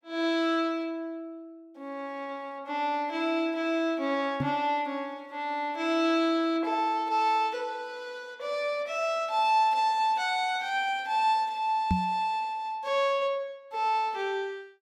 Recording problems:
knock on the microphone; at 4.5 s and at 12 s; peak +5 dB vs average level

